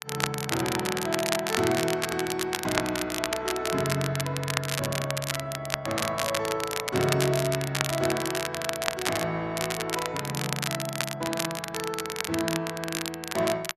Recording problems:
crackle; vinyl, SNR 2 dB

